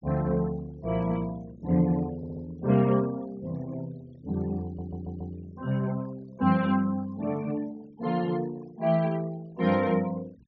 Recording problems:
treble cut off; nothing above 6.7 kHz
denoising artefacts; signal-to-artefact ratio 24 dB
stutter; at 2 s and at 4.5 s

